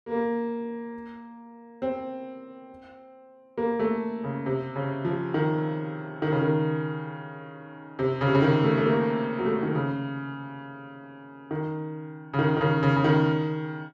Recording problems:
none

